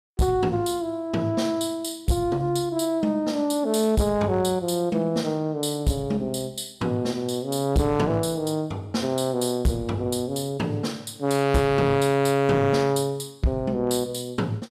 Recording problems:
distorted audio; hard clipping, signal-to-distortion ratio 11 dB

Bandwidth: 14 kHz